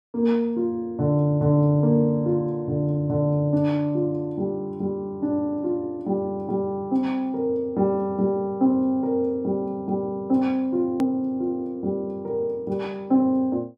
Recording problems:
click at an edit; at 11 s

